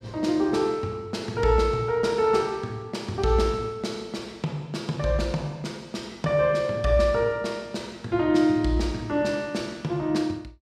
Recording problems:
none

